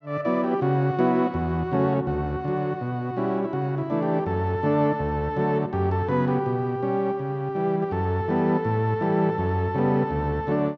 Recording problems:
none

